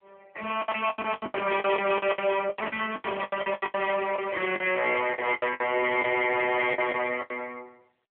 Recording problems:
phone line; 280 Hz to 3.3 kHz, AMR-NB
distorted audio; soft clipping, signal-to-distortion ratio 9 dB
lost packets; 19% of the sound replaced, filled with the last packet

